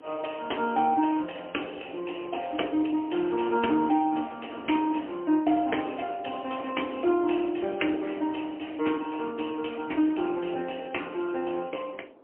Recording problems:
phone line; 240 Hz to 3.1 kHz, AMR-NB, then MP3
wind noise; below 670 Hz, SNR 22 dB

